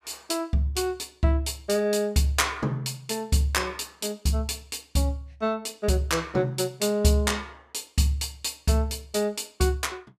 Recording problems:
none

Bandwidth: 15 kHz